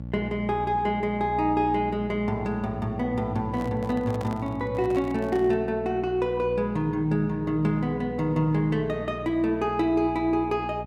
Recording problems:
hum; 60 Hz, harmonics up to 600 Hz, SNR 12 dB
handling noise; from 3.5 to 5.5 s; peak -7 dB vs average level

